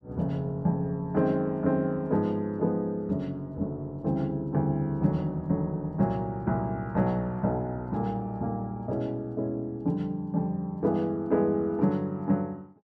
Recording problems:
none

